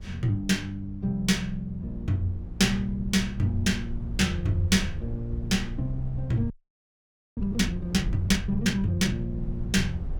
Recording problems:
wind on the microphone; below 76 Hz, SNR 11 dB
audio freezing; at 6.5 s for 1 s

